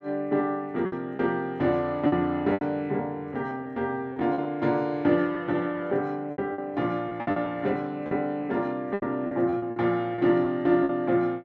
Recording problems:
packet loss; 9% of the sound replaced, filled with repeated pitch periods

